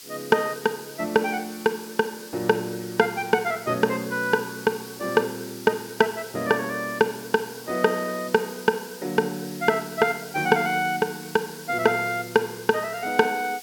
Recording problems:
background hiss; SNR 16 dB

